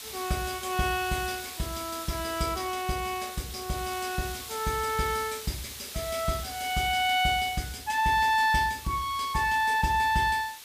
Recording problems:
background hiss; slope +2 dB per octave, SNR 11 dB

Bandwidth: 15 kHz